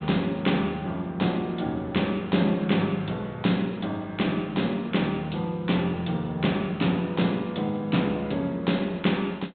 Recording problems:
low-pass filter; nothing above 4 kHz

